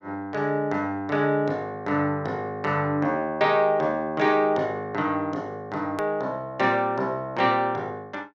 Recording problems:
edit click; at 6 s

